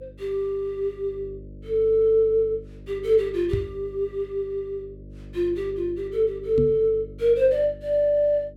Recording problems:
mains hum; 50 Hz, harmonics up to 600 Hz, SNR 20 dB
microphone bump; at 3.5 s and at 6.5 s; peak +1 dB vs average level

